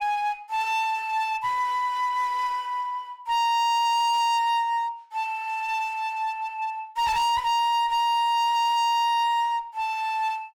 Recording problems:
distortion; hard clipping, uneven, signal-to-distortion ratio 5 dB

